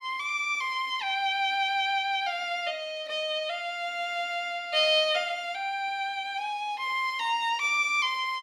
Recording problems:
none

